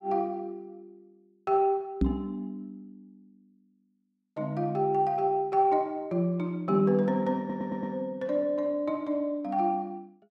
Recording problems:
knock on the microphone; at 2 s; peak +6 dB vs average level
stutter; at 7.5 s

